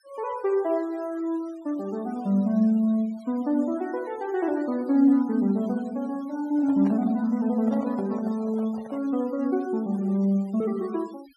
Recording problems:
noise reduction artefacts; signal-to-artefact ratio 25 dB
microphone handling noise; from 6.5 to 9 s; peak -11 dB vs average level

